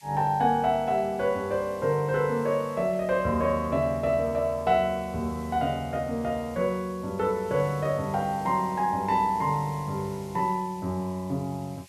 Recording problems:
background hiss; SNR 24 dB

